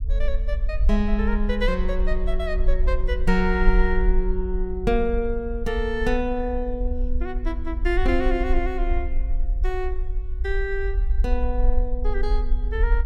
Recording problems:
low-frequency rumble; below 46 Hz, SNR 0 dB

